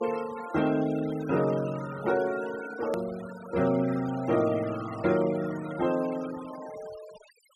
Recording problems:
denoising artefacts; signal-to-artefact ratio 16 dB
edit click; at 3 s

